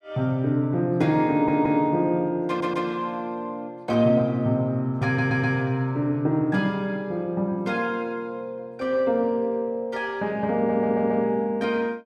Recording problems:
audio stuttering; 4 times, first at 1.5 s

